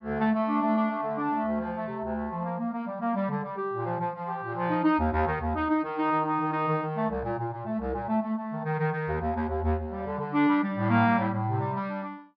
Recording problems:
low-pass filter; nothing above 5.5 kHz

